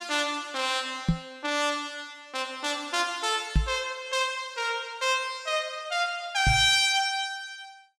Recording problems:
microphone thump; at 1 s, at 3.5 s and at 6.5 s; peak +7 dB vs average level

